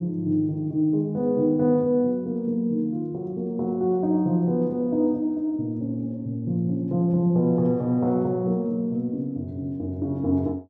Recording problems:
none

